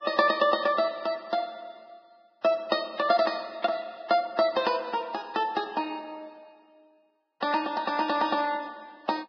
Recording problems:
codec artefacts; Vorbis, log-spectral distance 3 dB, nothing above 5 kHz

